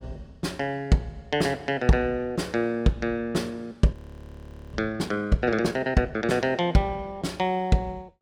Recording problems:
audio freezing; at 4 s for 1 s

